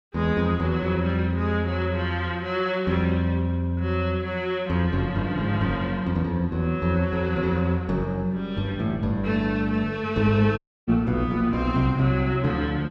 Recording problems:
audio cutting out; at 11 s

